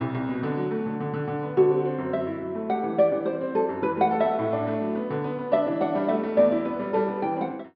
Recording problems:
treble missing; nothing above 5.5 kHz

